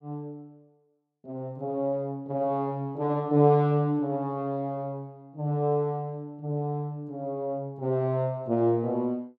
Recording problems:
none

